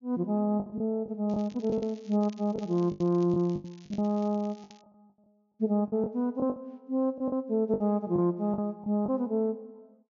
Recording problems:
treble missing; nothing above 6.9 kHz
packet loss; 10% of the sound replaced, filled with the last packet
crackle; from 1.5 to 5 s; loose cable, SNR 27 dB

